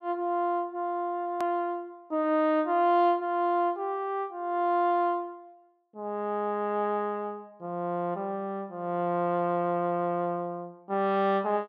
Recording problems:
edit click; at 1.5 s

